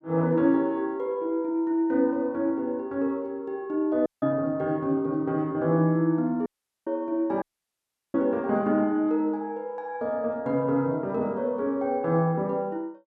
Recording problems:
dropout; at 4 s, at 6.5 s and at 7.5 s for 0.5 s

